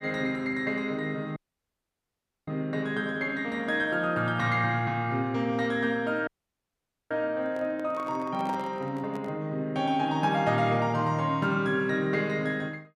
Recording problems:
audio cutting out; at 1.5 s for 1 s and at 6.5 s for 1 s
handling noise; from 7.5 to 9.5 s; peak -8 dB vs average level

